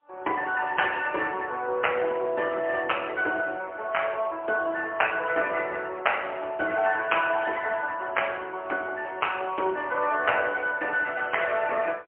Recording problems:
phone line; 260 Hz to 3.1 kHz, AMR-NB, then MP3

